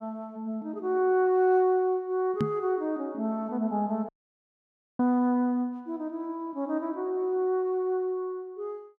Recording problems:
knock on the microphone; at 2.5 s; peak +3 dB vs average level
audio cutting out; at 4 s for 1 s

